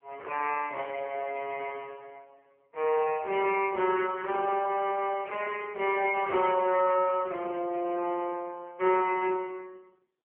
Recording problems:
telephone audio; 320 Hz to 2.9 kHz, AMR-NB

